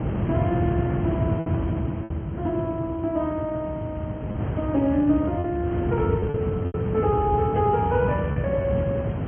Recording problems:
treble cut off; nothing above 3 kHz
lossy compression; Speex, log-spectral distance 2 dB
rumble; below 250 Hz, SNR 1 dB
wind noise; below 670 Hz, SNR 16 dB
lost packets; 4% of the sound replaced, filled with repeated pitch periods

